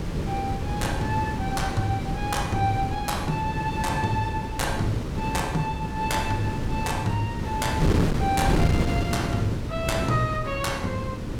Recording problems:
wind on the microphone; below 330 Hz, SNR 0 dB

